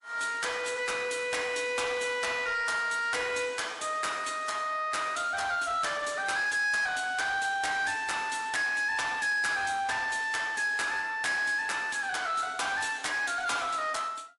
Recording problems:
lossy compression; MP3, log-spectral distance 4 dB, nothing above 11 kHz
distorted audio; soft clipping, signal-to-distortion ratio 12 dB

